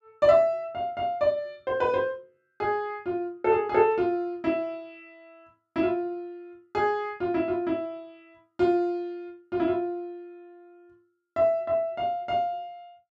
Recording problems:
none

